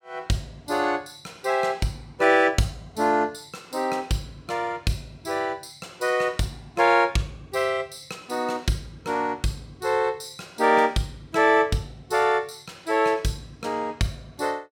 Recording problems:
none

